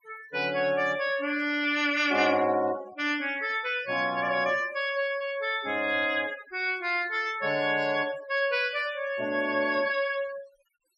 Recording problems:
denoising artefacts; signal-to-artefact ratio 19 dB

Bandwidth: 14.5 kHz